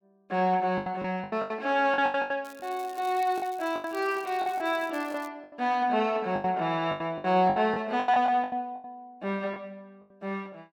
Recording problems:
packet loss; 14% of the sound replaced, filled with the last packet
crackling; from 2.5 to 5.5 s; loose cable, SNR 23 dB

